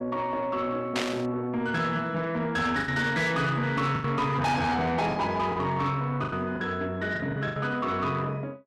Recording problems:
distortion; soft clipping, signal-to-distortion ratio 10 dB
lost packets; 6% of the sound replaced, filled with the last packet
static burst; at 1 s; peak +1 dB vs average level

